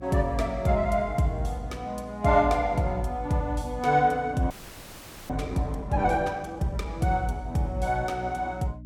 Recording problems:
hum; 60 Hz, harmonics up to 300 Hz, SNR 17 dB
frozen audio; at 4.5 s for 1 s

